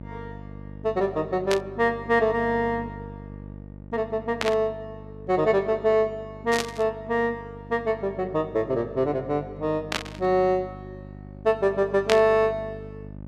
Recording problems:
mains hum; 50 Hz, harmonics up to 900 Hz, SNR 17 dB
static burst; 5 times, first at 1.5 s; peak +3 dB vs average level

